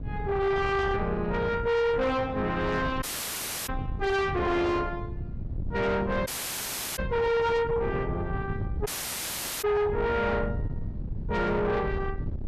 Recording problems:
distorted audio; soft clipping, signal-to-distortion ratio 8 dB
wind on the microphone; below 180 Hz, SNR 7 dB
audio cutting out; at 3 s for 0.5 s, at 6.5 s for 0.5 s and at 9 s for 1 s

